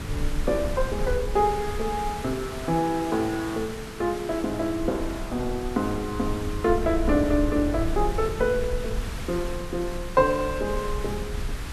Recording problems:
hiss; slope -3 dB per octave, SNR 11 dB
low-frequency rumble; below 66 Hz, SNR 8 dB

